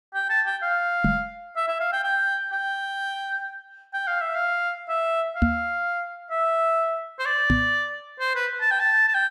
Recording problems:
microphone thump; at 1 s, at 5.5 s and at 7.5 s; peak +7 dB vs average level

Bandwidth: 14.5 kHz